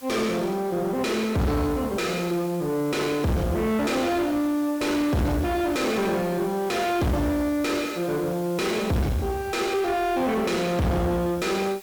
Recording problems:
distortion; soft clipping, signal-to-distortion ratio 6 dB
hiss; slope 0 dB per octave, SNR 19 dB

